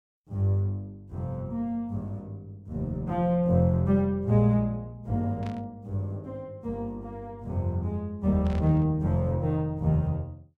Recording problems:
static burst; at 5.5 s and at 8.5 s; peak -14 dB vs average level

